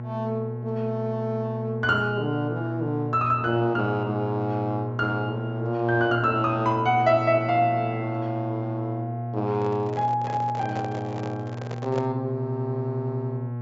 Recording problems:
treble cut off; nothing above 8 kHz
electrical hum; 60 Hz, harmonics up to 1.1 kHz, SNR 6 dB
microphone handling noise; from 9.5 to 12 s; peak -3 dB vs average level

